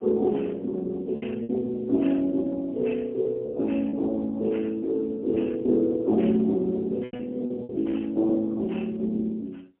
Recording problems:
telephone audio; 240 Hz to 2 kHz, AMR-NB, then MP3
lost packets; 5% of the sound replaced, filled with repeated pitch periods

